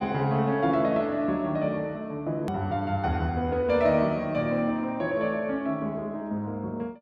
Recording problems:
hard cut with a click; at 2.5 s

